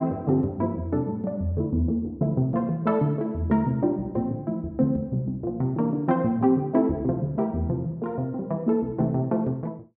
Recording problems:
none

